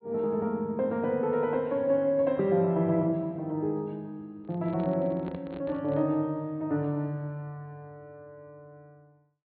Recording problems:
treble cut off; nothing above 4.4 kHz
microphone handling noise; from 4.5 to 6 s; peak -8 dB vs average level

